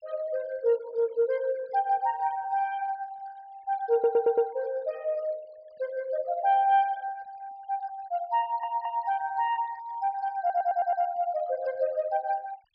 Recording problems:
treble cut off; nothing above 5.5 kHz
noise reduction artefacts; signal-to-artefact ratio 26 dB
audio stuttering; at 4 s, at 8.5 s and at 10 s

